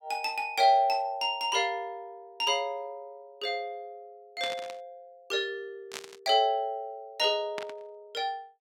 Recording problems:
burst of static; at 4.5 s, at 6 s and at 7.5 s; peak -4 dB vs average level

